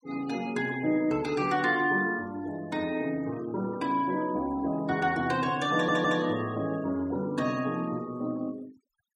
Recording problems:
denoising artefacts; signal-to-artefact ratio 21 dB
audio stuttering; at 5.5 s

